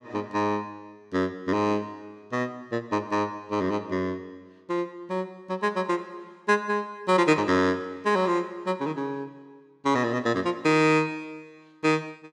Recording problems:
none

